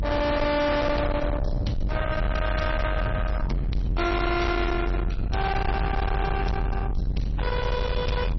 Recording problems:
codec artefacts; MP3, log-spectral distance 2 dB, nothing above 5.8 kHz
distorted audio; soft clipping, signal-to-distortion ratio 7 dB
low-frequency rumble; below 550 Hz, SNR 1 dB

